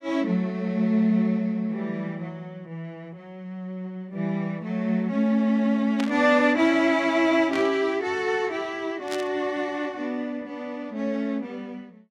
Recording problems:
burst of static; at 6 s, at 7.5 s and at 9 s; peak -5 dB vs average level

